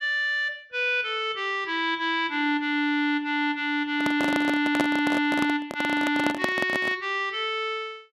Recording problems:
microphone handling noise; from 4 to 7 s; peak +3 dB vs average level

